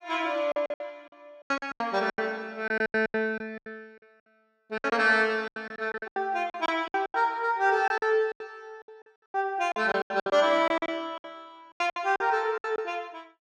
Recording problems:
packet loss; 18% of the sound replaced, filled with silence

